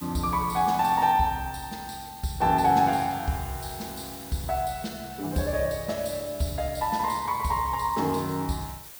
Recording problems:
background hiss; slope 0 dB per octave, SNR 15 dB

